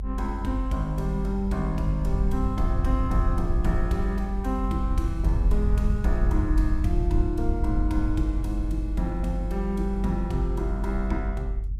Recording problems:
rumble; below 62 Hz, strongest tone 48 Hz, SNR -1 dB

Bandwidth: 15.5 kHz